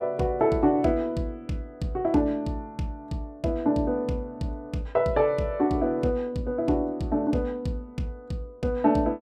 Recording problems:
none

